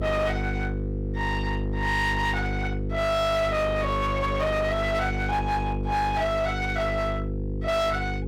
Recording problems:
distorted audio; hard clipping, signal-to-distortion ratio 10 dB
hum; 50 Hz, harmonics up to 500 Hz, SNR 3 dB

